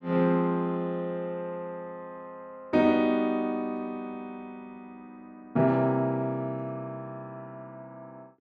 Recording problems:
none

